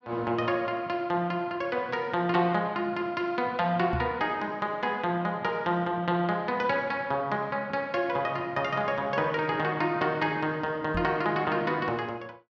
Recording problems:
microphone bump; at 4 s and at 11 s; peak 0 dB vs average level

